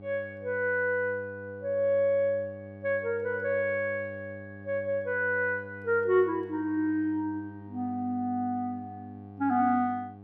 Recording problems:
electrical hum; 50 Hz, harmonics up to 800 Hz, SNR 17 dB

